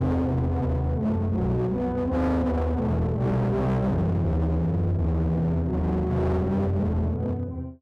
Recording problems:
distortion; hard clipping, uneven, signal-to-distortion ratio 7 dB

